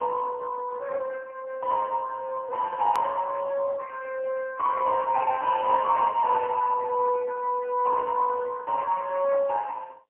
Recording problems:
phone line; 170 Hz to 2.8 kHz, AMR-NB, then MP3
click at an edit; at 3 s

